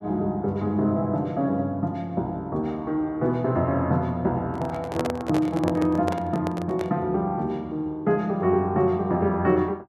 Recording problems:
handling noise; from 4.5 to 7 s; peak +1 dB vs average level

